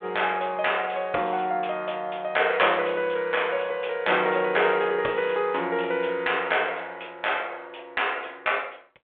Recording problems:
phone line; 300 Hz to 3.4 kHz, G.726

